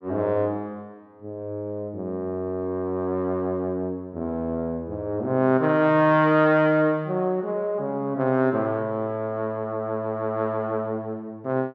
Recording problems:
none

